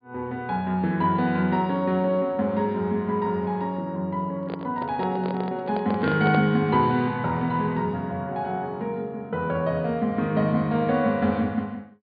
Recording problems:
low-pass filter; nothing above 4.8 kHz
handling noise; from 4.5 to 6.5 s; peak -1 dB vs average level

